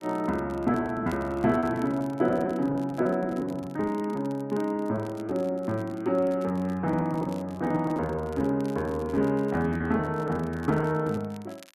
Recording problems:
crackle; vinyl, SNR 27 dB
lost packets; 14% of the sound replaced, filled with repeated pitch periods

